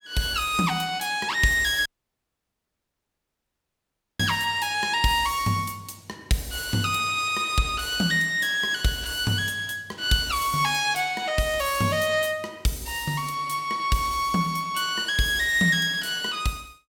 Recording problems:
dropout; at 2 s for 2.5 s

